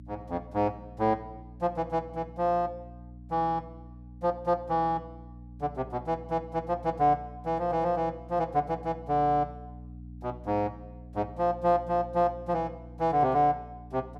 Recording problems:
mains hum; 60 Hz, harmonics up to 300 Hz, SNR 17 dB

